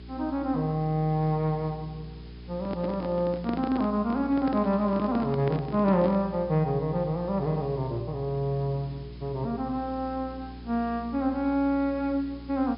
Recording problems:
treble missing; nothing above 5.5 kHz
hum; 60 Hz, harmonics up to 420 Hz, SNR 16 dB
background hiss; slope -1 dB per octave, SNR 27 dB
microphone handling noise; from 2.5 to 6.5 s; peak -2 dB vs average level

